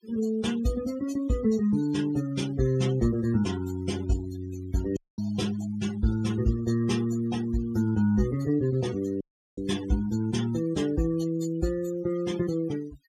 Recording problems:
noise reduction artefacts; signal-to-artefact ratio 17 dB
audio cutting out; at 5 s and at 9 s

